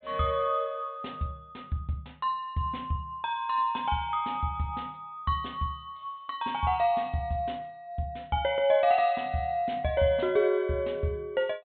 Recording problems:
treble cut off; nothing above 4 kHz

